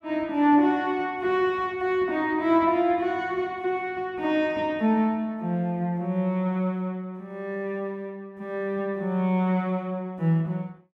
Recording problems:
none

